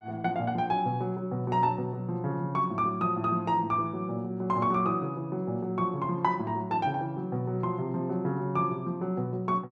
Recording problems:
none

